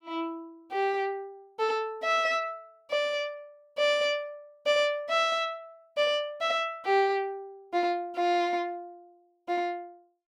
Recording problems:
none

